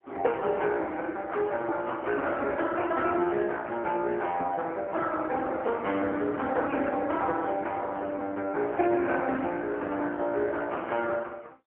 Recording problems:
telephone audio; 240 Hz to 3.3 kHz, AMR-NB, then MP3

